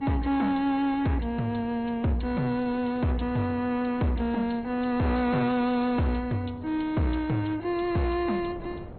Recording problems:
lossy compression; MP2, log-spectral distance 2 dB, nothing above 4.2 kHz
distorted audio; hard clipping, uneven, signal-to-distortion ratio 10 dB
wind on the microphone; below 430 Hz, SNR 20 dB

